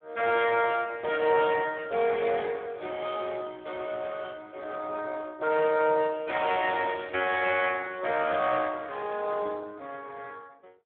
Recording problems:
telephone audio; 190 Hz to 3.6 kHz, Speex

